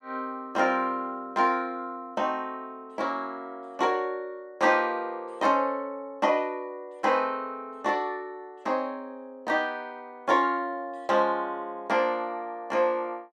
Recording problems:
none

